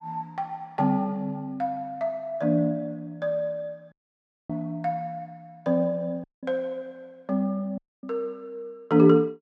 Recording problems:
audio cutting out; at 4 s for 0.5 s, at 6 s and at 8 s

